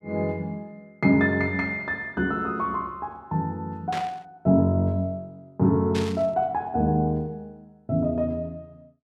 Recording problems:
burst of static; at 4 s and at 6 s; peak -5 dB vs average level

